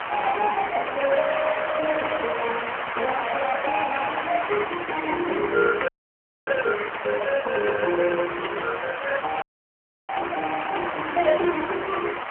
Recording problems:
telephone audio; 260 Hz to 3.1 kHz, AMR-NB
hiss; SNR 5 dB
audio freezing; at 6 s for 0.5 s and at 9.5 s for 0.5 s

